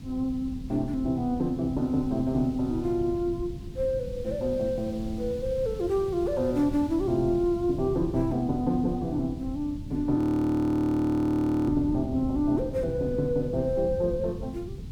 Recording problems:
hiss; slope 0 dB per octave, SNR 28 dB
rumble; below 140 Hz, SNR 13 dB
wind noise; below 200 Hz, SNR 15 dB
audio freezing; at 10 s for 1.5 s

